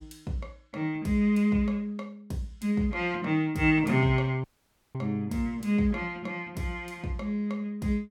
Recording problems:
audio cutting out; at 4.5 s for 0.5 s

